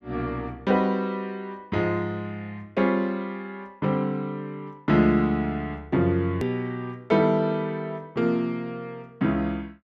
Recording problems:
edit click; at 6.5 s

